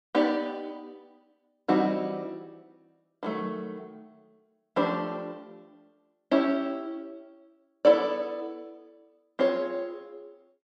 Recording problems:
none

